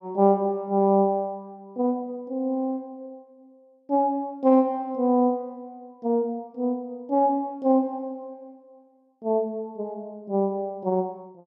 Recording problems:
none

